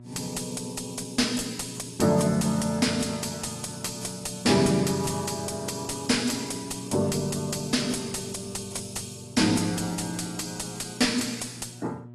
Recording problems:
lossy codec; AAC, log-spectral distance 7 dB, nothing above 12 kHz
distorted audio; soft clipping, signal-to-distortion ratio 6 dB
hum; 60 Hz, harmonics up to 960 Hz, SNR 19 dB

